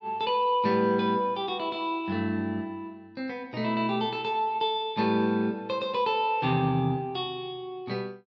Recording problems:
none

